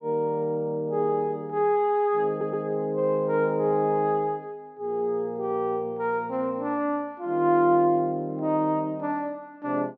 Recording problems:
stutter; at 2.5 s

